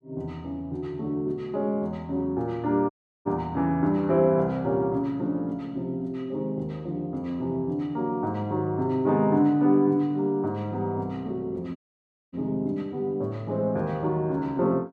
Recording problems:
audio cutting out; at 3 s and at 12 s for 0.5 s

